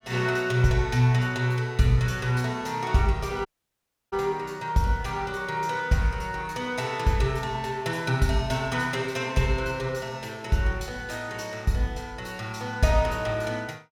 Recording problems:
audio cutting out; at 3.5 s for 0.5 s

